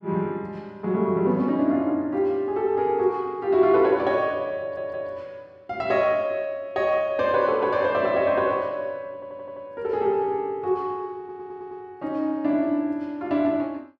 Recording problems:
stutter; at 4.5 s, at 9 s and at 11 s

